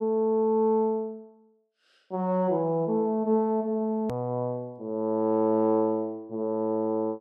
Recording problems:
edit click; at 4 s

